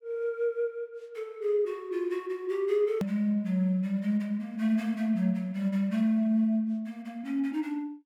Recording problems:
hard cut with a click; at 3 s

